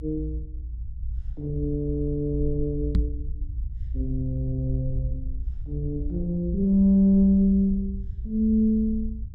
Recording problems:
low-frequency rumble; below 60 Hz, SNR 9 dB
knock on the microphone; at 3 s; peak +3 dB vs average level

